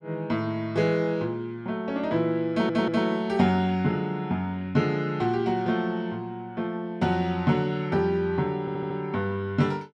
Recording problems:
stutter; at 2.5 s and at 8.5 s

